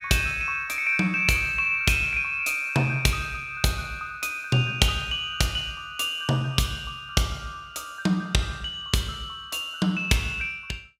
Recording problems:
none

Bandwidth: 16.5 kHz